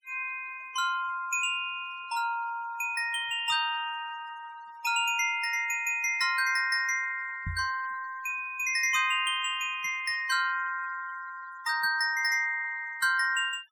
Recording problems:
noise reduction artefacts; signal-to-artefact ratio 22 dB
microphone thump; at 7.5 s; peak -4 dB vs average level

